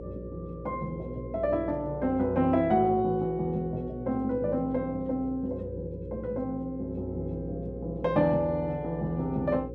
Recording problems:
electrical hum; 60 Hz, harmonics up to 540 Hz, SNR 11 dB

